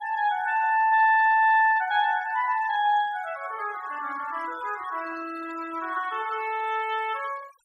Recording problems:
noise reduction artefacts; signal-to-artefact ratio 23 dB

